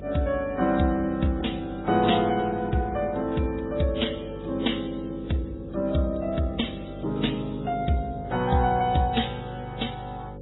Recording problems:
lossy compression; MP3, then AAC, log-spectral distance 4 dB, nothing above 3.8 kHz
electrical hum; 50 Hz, harmonics up to 550 Hz, SNR 13 dB

